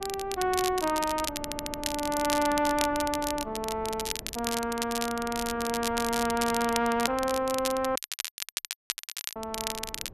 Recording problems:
wind on the microphone; below 420 Hz, SNR 17 dB
crackle; vinyl, SNR 5 dB
stutter; at 1.5 s
audio cutting out; at 8 s for 1.5 s

